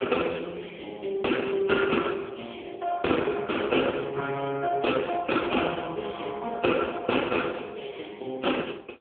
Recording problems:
telephone audio; 260 Hz to 3.5 kHz, AMR-NB

